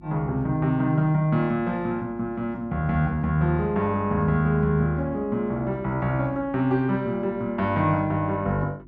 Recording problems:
mains hum; 50 Hz, harmonics up to 350 Hz, SNR 24 dB

